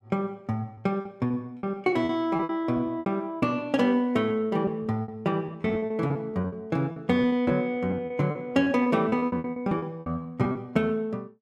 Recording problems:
packet loss; 15% of the sound replaced, filled with repeated pitch periods

